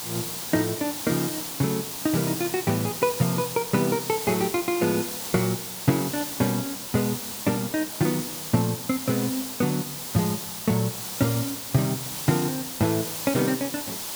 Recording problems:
background hiss; SNR 5 dB

